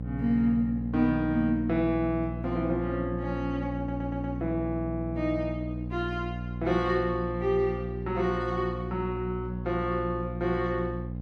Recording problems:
electrical hum; 60 Hz, harmonics up to 540 Hz, SNR 6 dB
stutter; at 4 s

